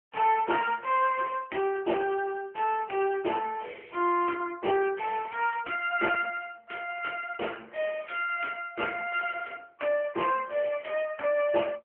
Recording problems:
phone line; 260 Hz to 3.1 kHz, AMR-NB

